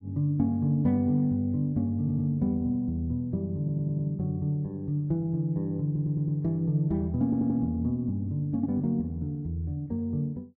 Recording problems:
stutter; 4 times, first at 2 s

